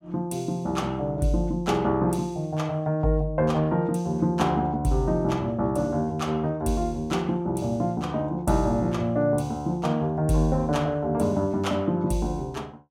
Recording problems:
none

